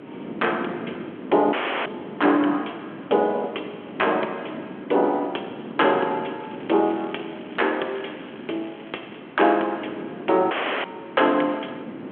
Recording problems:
phone line; 260 Hz to 3.4 kHz, G.726
hiss; SNR 24 dB
wind noise; below 420 Hz, SNR 14 dB
audio cutting out; at 1.5 s and at 11 s
crackle; from 6.5 to 9 s; loose cable, SNR 25 dB

